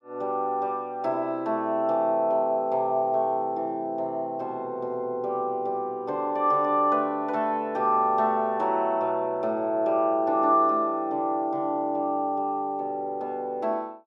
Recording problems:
none

